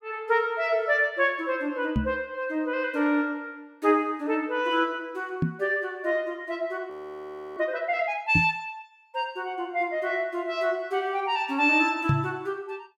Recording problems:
microphone thump; 4 times, first at 2 s; peak +5 dB vs average level
audio freezing; at 7 s for 0.5 s

